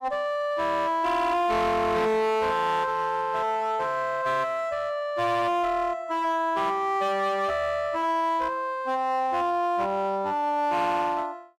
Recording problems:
distortion; hard clipping, uneven, signal-to-distortion ratio 10 dB

